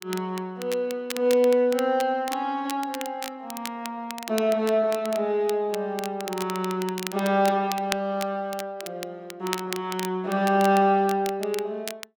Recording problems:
crackling; vinyl, SNR 13 dB

